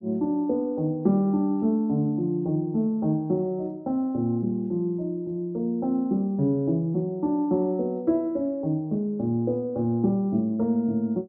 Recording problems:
none

